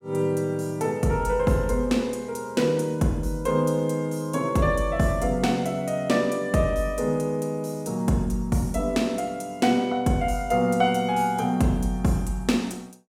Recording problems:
none

